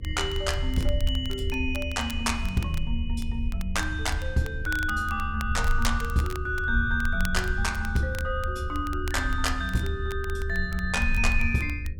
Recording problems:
hum; 50 Hz, harmonics up to 550 Hz, SNR 15 dB
low-frequency rumble; below 76 Hz, SNR 4 dB
crackle; vinyl, SNR 17 dB

